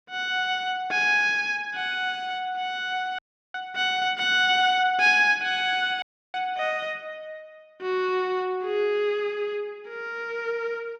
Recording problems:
audio cutting out; at 3 s and at 6 s

